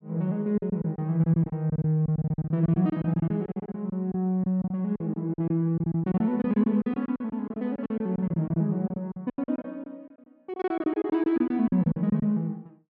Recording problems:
packet loss; 17% of the sound replaced, filled with silence

